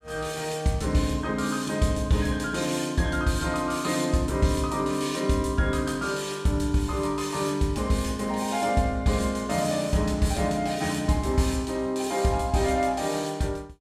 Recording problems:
none

